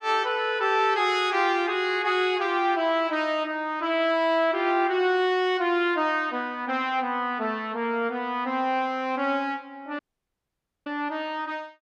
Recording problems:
dropout; at 10 s for 1 s

